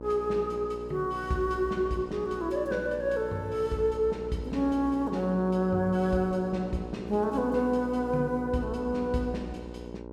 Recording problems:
hum; 60 Hz, harmonics up to 1.1 kHz, SNR 12 dB

